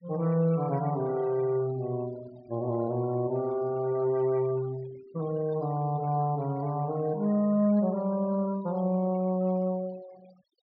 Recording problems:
treble cut off; nothing above 5.5 kHz
denoising artefacts; signal-to-artefact ratio 23 dB

